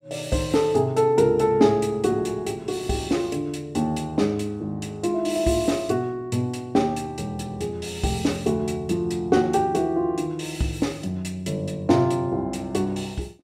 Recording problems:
none

